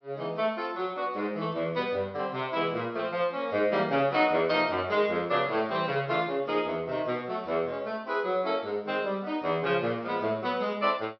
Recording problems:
treble cut off; nothing above 5.5 kHz

